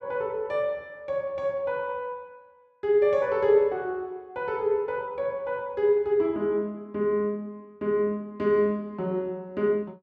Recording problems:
none

